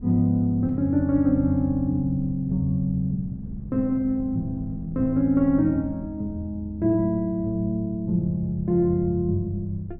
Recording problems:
wind on the microphone; below 140 Hz, SNR 16 dB

